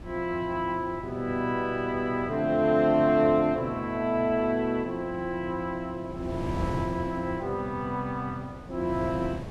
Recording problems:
wind noise; below 350 Hz, SNR 12 dB

